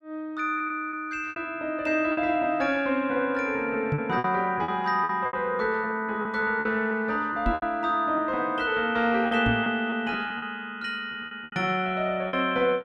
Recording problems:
lost packets; 9% of the sound replaced, filled with repeated pitch periods
knock on the microphone; at 4 s, at 7.5 s and at 9.5 s; peak +2 dB vs average level

